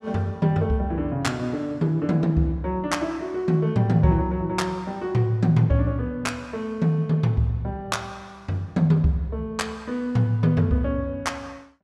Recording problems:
none

